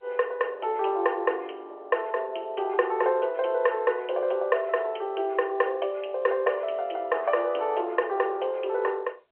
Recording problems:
telephone audio; 340 Hz to 3.2 kHz, G.711

